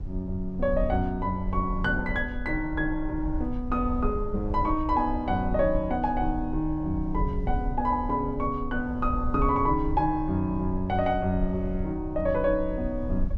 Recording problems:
rumble; below 66 Hz, SNR 8 dB

